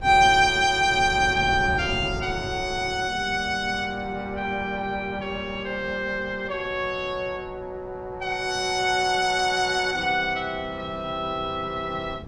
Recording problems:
wind noise; below 280 Hz, SNR 15 dB

